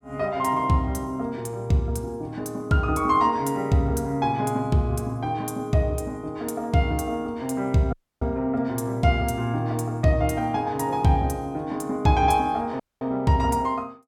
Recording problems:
dropout; at 8 s and at 13 s

